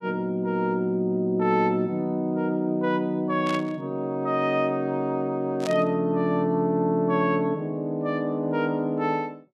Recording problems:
burst of static; at 3.5 s and at 5.5 s; peak -6 dB vs average level

